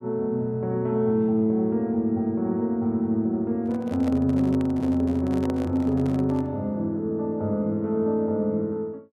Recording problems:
microphone handling noise; from 3.5 to 6.5 s; peak -8 dB vs average level

